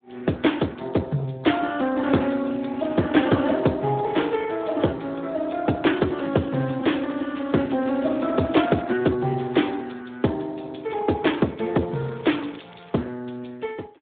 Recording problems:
phone line; 110 Hz to 3.6 kHz, Speex
crackling; from 6 to 9 s and from 12 to 13 s; loose cable, SNR 25 dB

